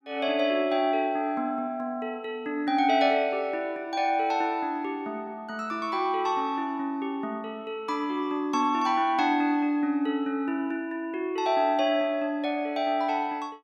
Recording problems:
none

